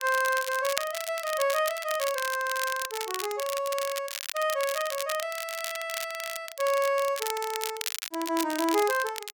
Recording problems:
crackling; vinyl, SNR 6 dB

